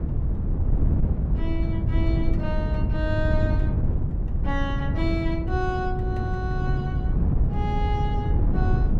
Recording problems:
wind on the microphone; below 130 Hz, SNR -5 dB

